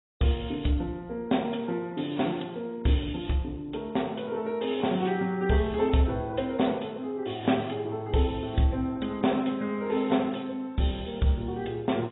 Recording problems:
codec artefacts; AAC, log-spectral distance 7 dB, nothing above 3.8 kHz

